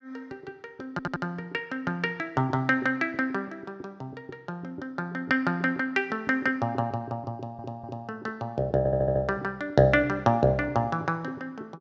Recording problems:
audio stuttering; at 1 s, at 7.5 s and at 9 s

